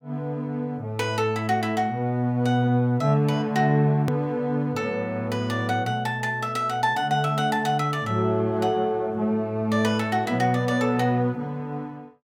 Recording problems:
hard cut with a click; at 4 s

